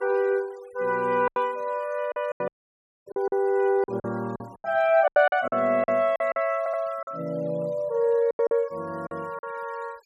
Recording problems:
denoising artefacts; signal-to-artefact ratio 27 dB
lost packets; 12% of the sound replaced, filled with silence
audio cutting out; at 2.5 s for 0.5 s
audio stuttering; at 6.5 s

